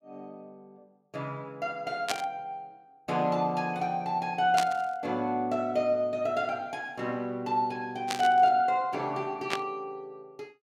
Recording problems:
burst of static; 4 times, first at 2 s; peak +3 dB vs average level

